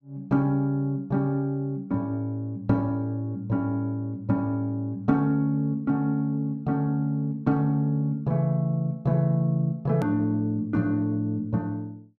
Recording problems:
hard cut with a click; at 10 s

